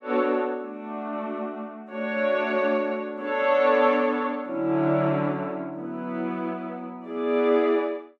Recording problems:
none

